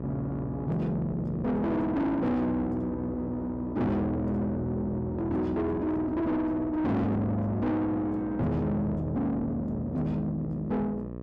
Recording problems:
distortion; soft clipping, signal-to-distortion ratio 6 dB
electrical hum; 60 Hz, harmonics up to 1.3 kHz, SNR 10 dB

